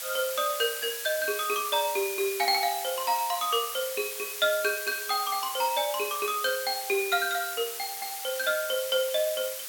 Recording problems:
hiss; slope +3 dB per octave, SNR 6 dB

